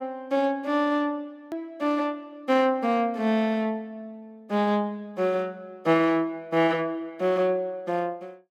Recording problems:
edit click; at 1.5 s

